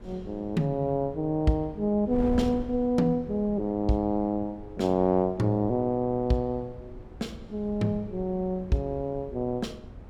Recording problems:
wind noise; below 240 Hz, SNR 16 dB

